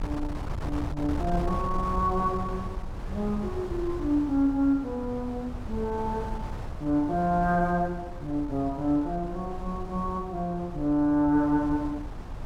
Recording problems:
wind noise; below 170 Hz, SNR 9 dB

